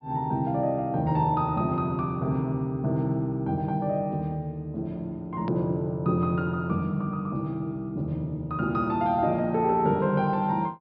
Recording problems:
treble cut off; nothing above 5.5 kHz
hard cut with a click; at 5.5 s

